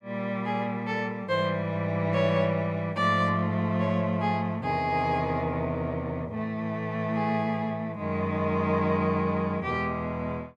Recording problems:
none

